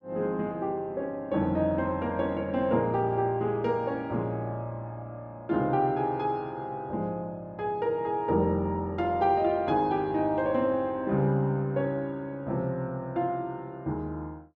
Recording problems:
none

